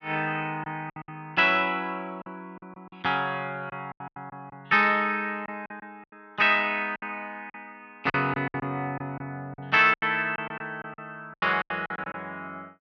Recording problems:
packet loss; 11% of the sound replaced, filled with silence

